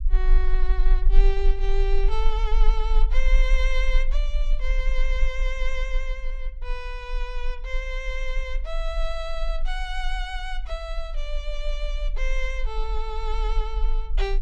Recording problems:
rumble; below 34 Hz, strongest tone 22 Hz, SNR -5 dB

